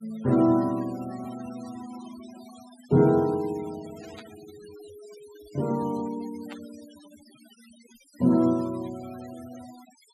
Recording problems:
noise reduction artefacts; signal-to-artefact ratio 22 dB
burst of static; at 4 s and at 6.5 s; peak -15 dB vs average level

